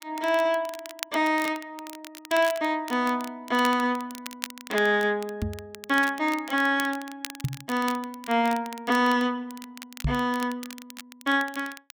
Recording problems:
crackle; vinyl, SNR 16 dB
microphone bump; at 5.5 s, at 7.5 s and at 10 s; peak +2 dB vs average level

